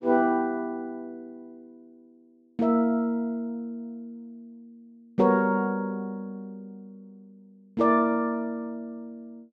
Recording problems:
none

